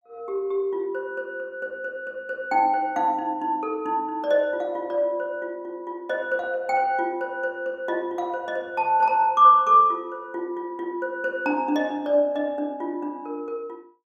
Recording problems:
none

